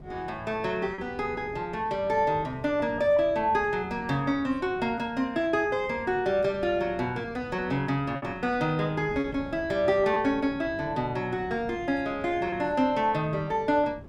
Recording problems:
wind on the microphone; below 310 Hz, SNR 18 dB
lost packets; 1.6% of the sound replaced, filled with repeated pitch periods

